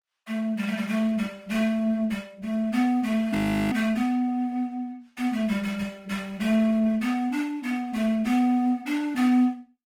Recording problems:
codec artefacts; Opus, log-spectral distance 2 dB, nothing above 19 kHz
frozen audio; at 3.5 s

